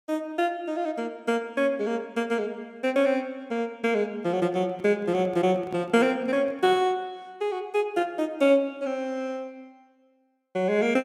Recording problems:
handling noise; from 4.5 to 7 s; peak -11 dB vs average level

